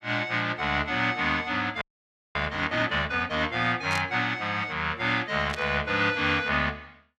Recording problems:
audio freezing; at 2 s for 0.5 s
burst of static; at 4 s and at 5.5 s; peak -5 dB vs average level

